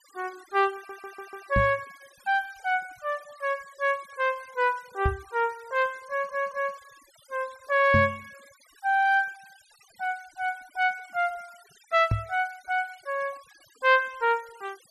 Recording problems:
denoising artefacts; signal-to-artefact ratio 25 dB
audio stuttering; at 1 s and at 6 s
microphone bump; 4 times, first at 1.5 s; peak +5 dB vs average level

